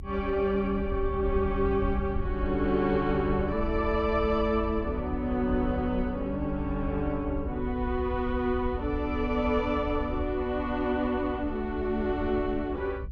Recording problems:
rumble; below 74 Hz, SNR 8 dB

